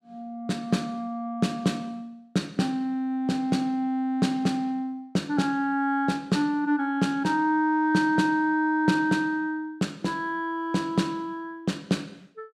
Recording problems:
none

